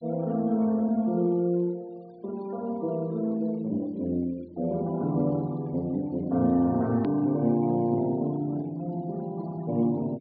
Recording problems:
low-pass filter; nothing above 4.9 kHz
denoising artefacts; signal-to-artefact ratio 27 dB
edit click; at 7 s

